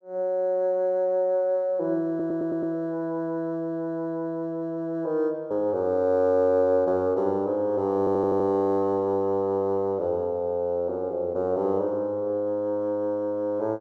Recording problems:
stutter; at 2 s and at 8 s

